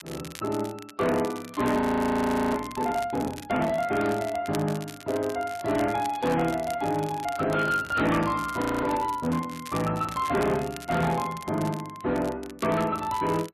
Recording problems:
lossy compression; MP3, log-spectral distance 2 dB, nothing above 13.1 kHz
distortion; hard clipping, signal-to-distortion ratio 11 dB
crackle; vinyl, SNR 17 dB
audio freezing; at 2 s for 0.5 s and at 8.5 s

